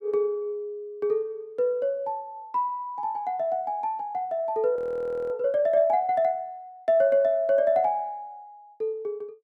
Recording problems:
audio freezing; at 5 s for 0.5 s

